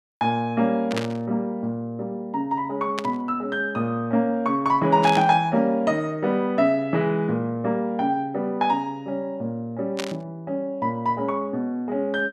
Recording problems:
burst of static; 4 times, first at 1 s; peak -1 dB vs average level

